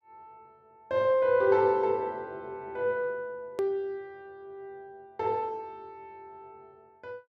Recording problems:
edit click; at 3.5 s

